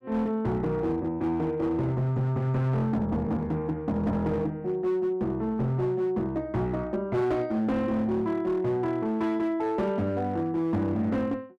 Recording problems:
distorted audio; hard clipping, uneven, signal-to-distortion ratio 11 dB

